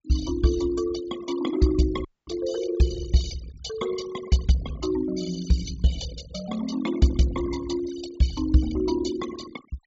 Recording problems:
low-pass filter; nothing above 8 kHz
denoising artefacts; signal-to-artefact ratio 14 dB
audio cutting out; at 2 s

